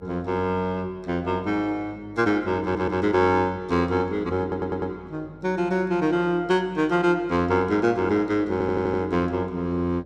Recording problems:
hum; 50 Hz, harmonics up to 600 Hz, SNR 26 dB
stutter; at 2.5 s, at 4.5 s and at 8.5 s

